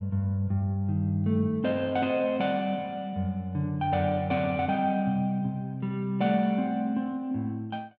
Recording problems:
none

